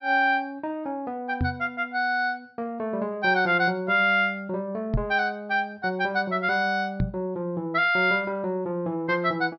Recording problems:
treble missing; nothing above 5.5 kHz
microphone thump; at 1.5 s, at 5 s and at 7 s; peak +4 dB vs average level

